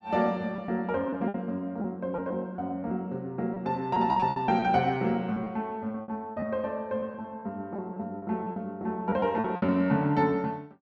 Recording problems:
packet loss; 10% of the sound replaced, filled with repeated pitch periods

